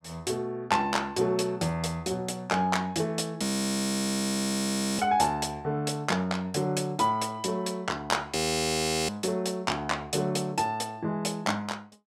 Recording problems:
frozen audio; at 3.5 s for 1.5 s and at 8.5 s for 0.5 s

